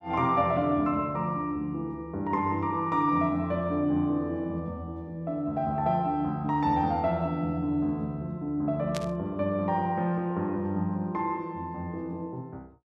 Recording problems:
static burst; at 9 s; peak -4 dB vs average level

